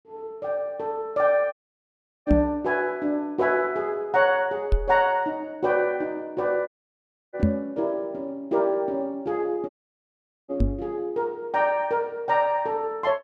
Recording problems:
dropout; at 1.5 s for 0.5 s, at 6.5 s for 0.5 s and at 9.5 s for 1 s
microphone thump; 4 times, first at 2.5 s; peak +8 dB vs average level

